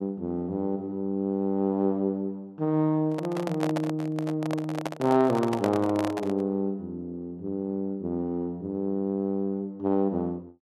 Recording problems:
handling noise; from 3 to 6.5 s; peak +1 dB vs average level

